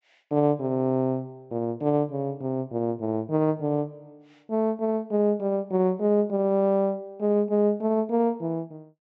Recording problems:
low-pass filter; nothing above 8 kHz

